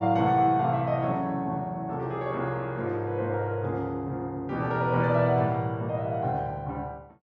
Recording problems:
none

